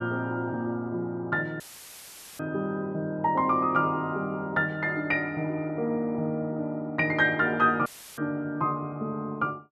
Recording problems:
audio cutting out; at 1.5 s for 1 s and at 8 s; filled with static

